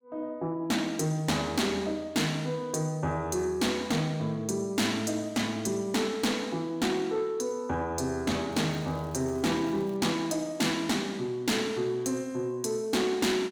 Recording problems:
distorted audio; soft clipping, signal-to-distortion ratio 11 dB
crackling; from 8.5 to 10 s; loose cable, SNR 28 dB

